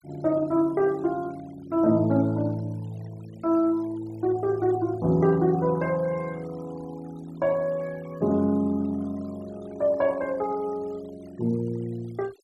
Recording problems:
noise reduction artefacts; signal-to-artefact ratio 25 dB

